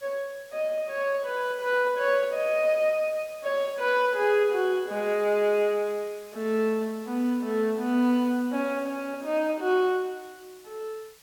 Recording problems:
background hiss; slope +1 dB per octave, SNR 24 dB

